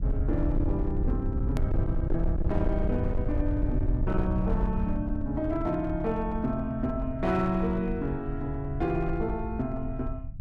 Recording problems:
distortion; hard clipping, uneven, signal-to-distortion ratio 11 dB
low-frequency rumble; below 92 Hz, SNR 2 dB
click at an edit; at 1.5 s

